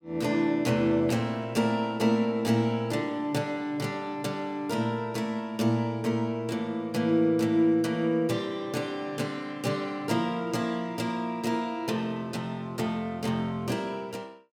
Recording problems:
none

